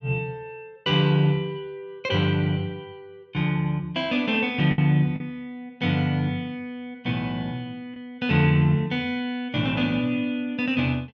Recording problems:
packet loss; 1.1% of the sound replaced, filled with the last packet

